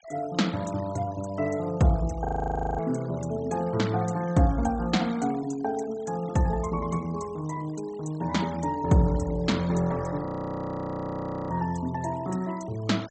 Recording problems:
treble cut off; nothing above 8 kHz
noise reduction artefacts; signal-to-artefact ratio 21 dB
audio freezing; at 2.5 s for 0.5 s and at 10 s for 1.5 s

